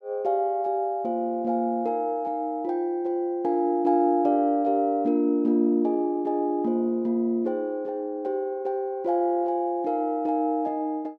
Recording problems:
none

